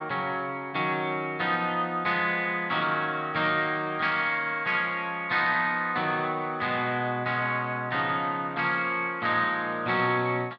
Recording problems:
none

